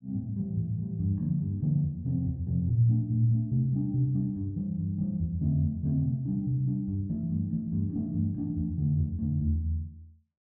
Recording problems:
none

